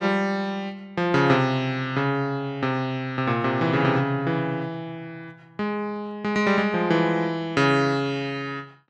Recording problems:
none

